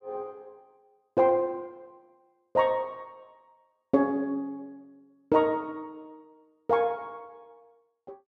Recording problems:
none

